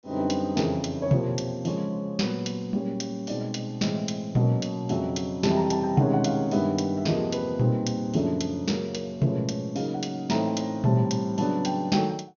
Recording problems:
treble missing; nothing above 6.6 kHz

